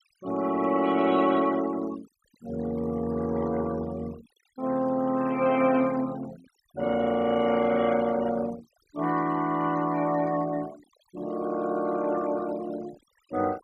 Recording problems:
noise reduction artefacts; signal-to-artefact ratio 19 dB

